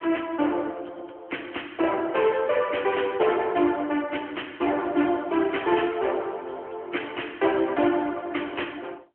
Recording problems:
telephone audio; 260 Hz to 3.2 kHz, AMR-NB

